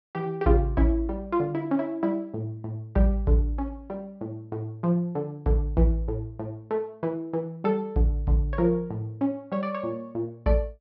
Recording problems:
treble cut off; nothing above 5.7 kHz

